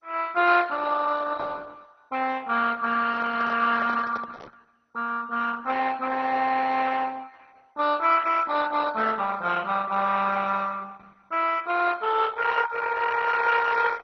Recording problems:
codec artefacts; Opus, then MP2, log-spectral distance 5 dB, nothing above 6 kHz
handling noise; from 3 to 4.5 s; peak -10 dB vs average level

